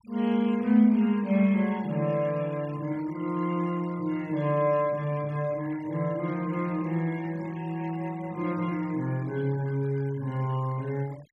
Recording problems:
noise reduction artefacts; signal-to-artefact ratio 24 dB

